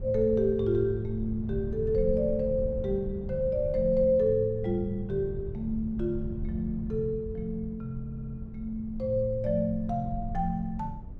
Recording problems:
low-frequency rumble; below 90 Hz, SNR 11 dB
stutter; at 8 s

